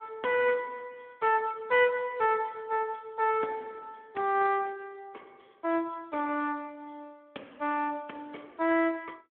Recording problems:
telephone audio; 240 Hz to 3.4 kHz, Speex

